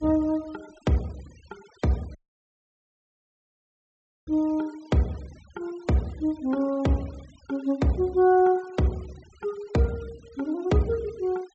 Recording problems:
low-pass filter; nothing above 8 kHz
noise reduction artefacts; signal-to-artefact ratio 26 dB
audio cutting out; at 2 s for 2 s

